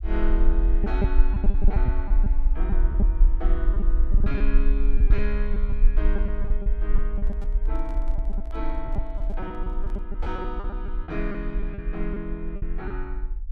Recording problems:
low-frequency rumble; below 44 Hz, strongest tone 22 Hz, SNR -8 dB
packet loss; 10% of the sound replaced, filled with repeated pitch periods
microphone handling noise; from 7 to 10 s; peak -8 dB vs average level

